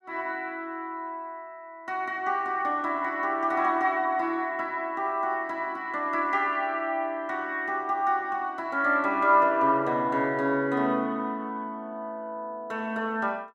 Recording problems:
none

